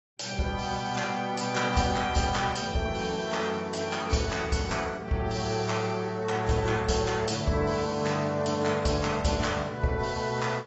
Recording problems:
lossy codec; AAC, log-spectral distance 6 dB, nothing above 7.6 kHz

